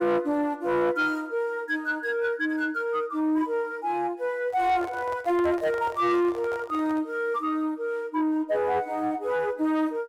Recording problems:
distorted audio; soft clipping, signal-to-distortion ratio 12 dB
microphone handling noise; from 4.5 to 7 s; peak -8 dB vs average level

